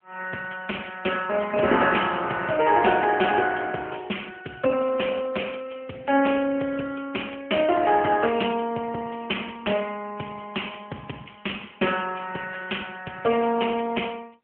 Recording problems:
telephone audio; 240 Hz to 3.2 kHz, AMR-NB

